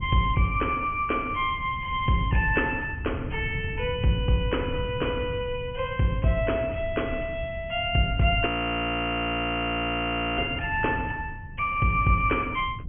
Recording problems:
treble missing; nothing above 3.2 kHz
wind on the microphone; below 140 Hz, SNR 12 dB
audio freezing; at 8.5 s for 2 s

